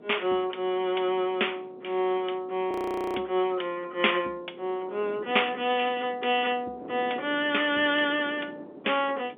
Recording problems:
telephone audio; 260 Hz to 3.5 kHz, G.711
wind on the microphone; below 510 Hz, SNR 19 dB
frozen audio; at 2.5 s

